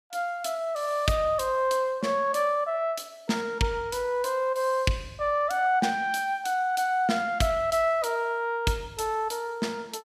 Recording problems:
none

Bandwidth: 14.5 kHz